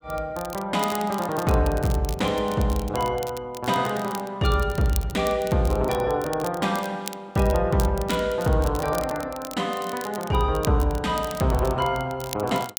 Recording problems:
crackling; vinyl, SNR 15 dB

